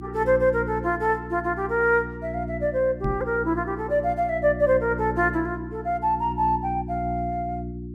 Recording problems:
hum; 60 Hz, harmonics up to 360 Hz, SNR 9 dB
microphone bump; at 3 s; peak 0 dB vs average level

